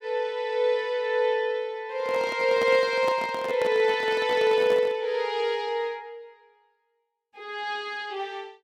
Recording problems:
microphone handling noise; from 2 to 5 s; peak -5 dB vs average level

